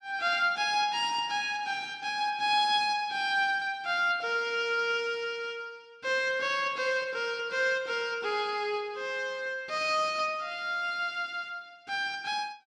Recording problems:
none

